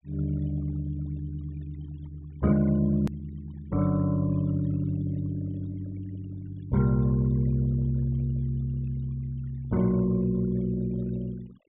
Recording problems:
treble cut off; nothing above 4 kHz
denoising artefacts; signal-to-artefact ratio 23 dB
edit click; at 3 s

